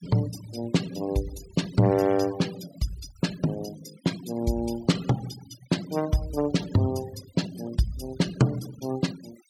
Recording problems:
denoising artefacts; signal-to-artefact ratio 16 dB

